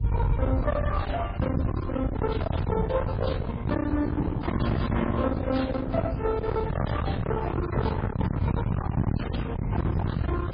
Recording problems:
lossy compression; Opus, then MP3, log-spectral distance 2 dB, nothing above 4.4 kHz
distorted audio; hard clipping, signal-to-distortion ratio 6 dB
low-frequency rumble; below 340 Hz, SNR 0 dB

